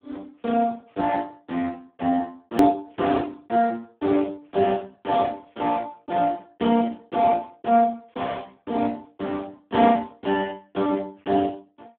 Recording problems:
phone line; 220 Hz to 2.3 kHz, Speex
hard cut with a click; at 2.5 s

